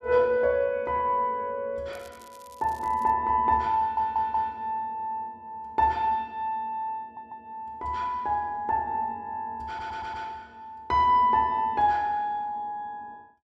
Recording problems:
crackling; from 2 to 3 s; loose cable, SNR 27 dB
stutter; at 4 s, at 7 s and at 9.5 s

